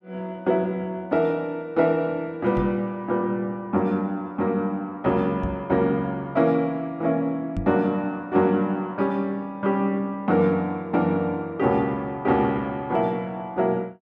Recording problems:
microphone thump; at 2.5 s, at 5.5 s and at 7.5 s; peak -2 dB vs average level

